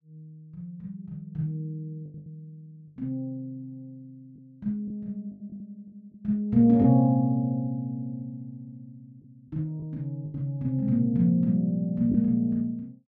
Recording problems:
lost packets; 5% of the sound replaced, filled with the last packet

